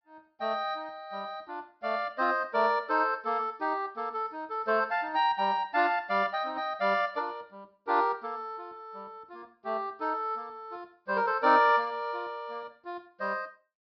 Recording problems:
treble missing; nothing above 5.5 kHz

